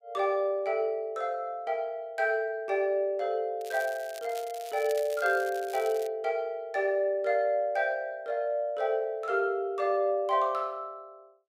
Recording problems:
crackle; from 3.5 to 6 s; loose cable, SNR 18 dB

